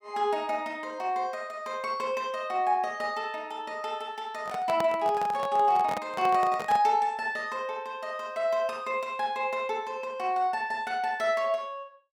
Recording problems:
handling noise; from 4.5 to 7 s; peak 0 dB vs average level

